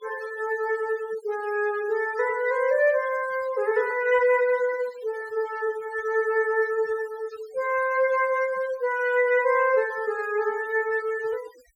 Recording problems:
denoising artefacts; signal-to-artefact ratio 20 dB

